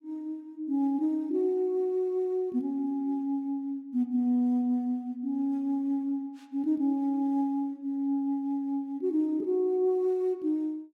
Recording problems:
none

